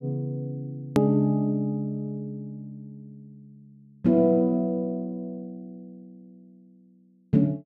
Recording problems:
click at an edit; at 1 s

